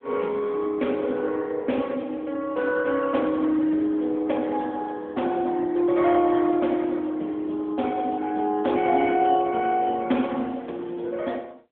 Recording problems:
phone line; 240 Hz to 3.5 kHz, AMR-NB

